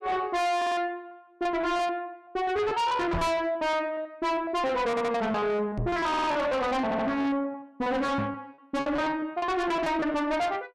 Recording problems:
distorted audio; soft clipping, signal-to-distortion ratio 7 dB
packet loss; 14% of the sound replaced, filled with repeated pitch periods
stutter; 4 times, first at 0.5 s
knock on the microphone; at 3 s, at 6 s and at 8 s; peak +2 dB vs average level

